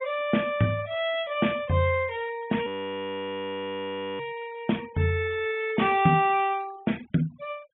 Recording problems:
low-pass filter; nothing above 3.5 kHz
noise reduction artefacts; signal-to-artefact ratio 22 dB
frozen audio; at 2.5 s for 1.5 s

